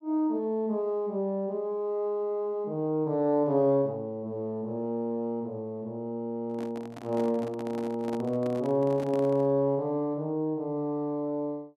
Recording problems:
microphone handling noise; from 6.5 to 9.5 s; peak -8 dB vs average level

